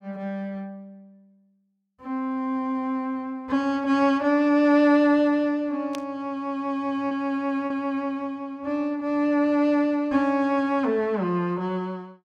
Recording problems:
lost packets; 0.6% of the sound replaced, filled with repeated pitch periods
static burst; at 6 s; peak -9 dB vs average level

